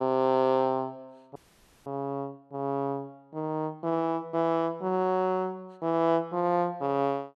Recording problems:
frozen audio; at 1.5 s for 0.5 s

